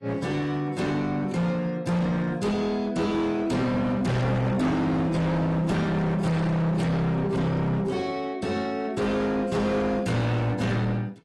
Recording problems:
lossy codec; AAC, log-spectral distance 2 dB, nothing above 11.6 kHz
distortion; hard clipping, signal-to-distortion ratio 7 dB

